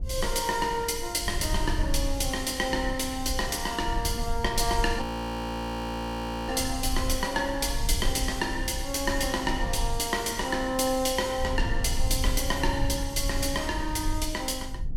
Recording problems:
rumble; below 66 Hz, SNR 7 dB
audio freezing; at 5 s for 1.5 s

